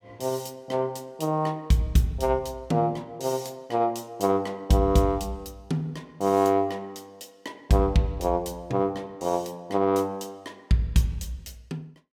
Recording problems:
none

